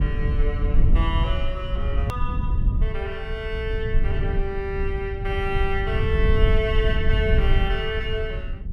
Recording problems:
rumble; below 76 Hz, SNR -3 dB
click at an edit; at 2 s

